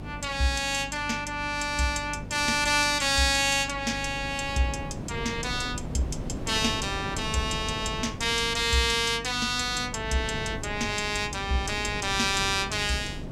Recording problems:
hum; 50 Hz, harmonics up to 300 Hz, SNR 16 dB
wind on the microphone; below 370 Hz, SNR 13 dB

